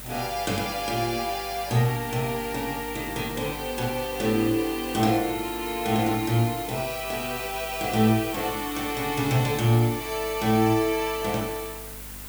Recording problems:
mains hum; 50 Hz, harmonics up to 550 Hz, SNR 20 dB
background hiss; slope -1 dB per octave, SNR 11 dB

